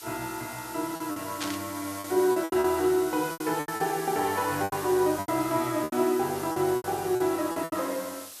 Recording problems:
background hiss; slope +1 dB per octave, SNR 12 dB
packet loss; 12% of the sound replaced, filled with repeated pitch periods
static burst; at 1.5 s; peak -1 dB vs average level

